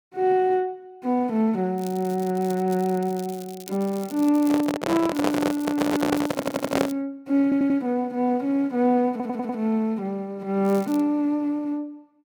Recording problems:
crackle; from 2 to 4.5 s, from 5 to 7 s and at 11 s; loose cable, SNR 20 dB
handling noise; from 4.5 to 7 s; peak +4 dB vs average level
stutter; at 6.5 s, at 7.5 s and at 9 s

